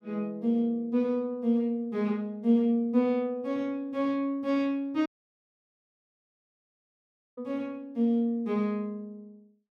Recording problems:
dropout; at 5 s for 2.5 s

